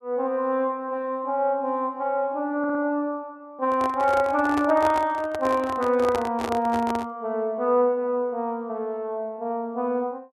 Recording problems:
audio stuttering; at 2.5 s
handling noise; from 3.5 to 7 s; peak -1 dB vs average level

